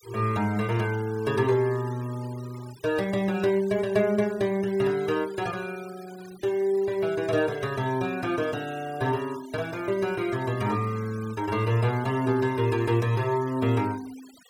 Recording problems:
denoising artefacts; signal-to-artefact ratio 21 dB

